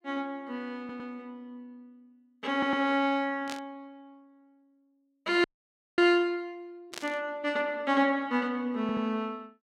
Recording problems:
stutter; at 1 s, at 2.5 s and at 9 s
static burst; at 3.5 s and at 7 s; peak -5 dB vs average level
frozen audio; at 5.5 s for 0.5 s

